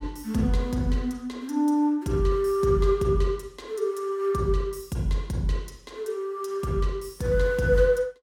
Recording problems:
none

